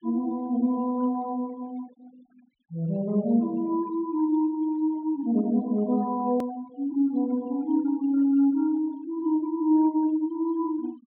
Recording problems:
low-pass filter; nothing above 4 kHz
denoising artefacts; signal-to-artefact ratio 26 dB
hard cut with a click; at 6.5 s

